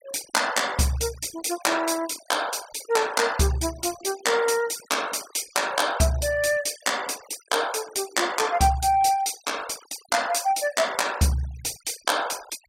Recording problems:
denoising artefacts; signal-to-artefact ratio 18 dB

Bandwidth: 16 kHz